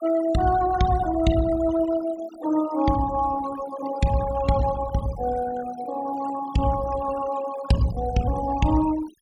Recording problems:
denoising artefacts; signal-to-artefact ratio 14 dB

